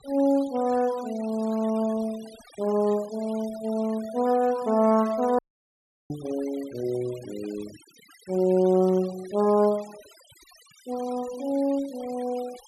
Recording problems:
denoising artefacts; signal-to-artefact ratio 21 dB
audio cutting out; at 5.5 s for 0.5 s

